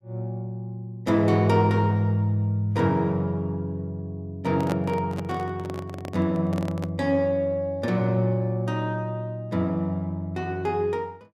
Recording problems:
microphone handling noise; from 4.5 to 7 s; peak -2 dB vs average level

